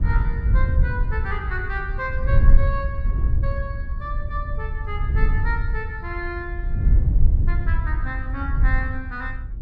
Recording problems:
wind on the microphone; below 68 Hz, SNR -7 dB

